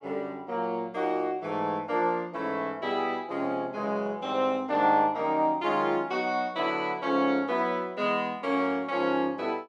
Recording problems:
none

